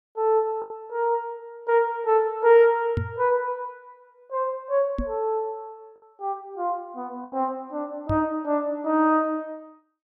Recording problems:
lost packets; 1.8% of the sound replaced, filled with the last packet
knock on the microphone; at 3 s, at 5 s and at 8 s; peak +1 dB vs average level

